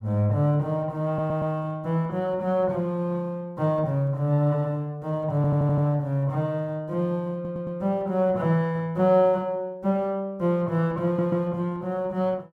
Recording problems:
audio stuttering; 4 times, first at 1 s

